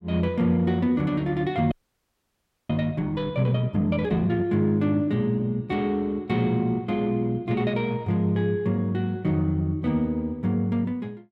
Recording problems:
frozen audio; at 1.5 s for 1 s

